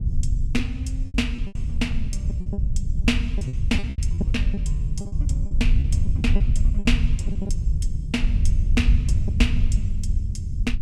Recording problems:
rumble; below 78 Hz, SNR -5 dB
lost packets; 10% of the sound replaced, filled with repeated pitch periods

